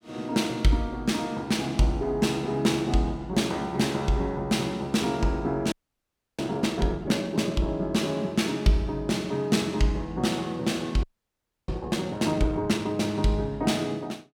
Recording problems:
audio freezing; at 5.5 s for 0.5 s and at 11 s for 0.5 s

